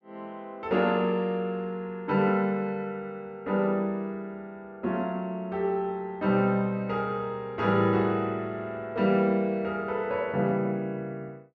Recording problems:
none

